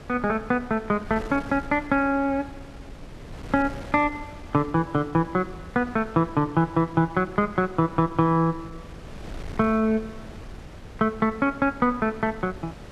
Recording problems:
wind noise; below 450 Hz, SNR 17 dB

